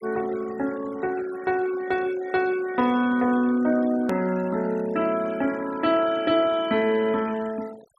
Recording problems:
noise reduction artefacts; signal-to-artefact ratio 20 dB
hard cut with a click; at 4 s

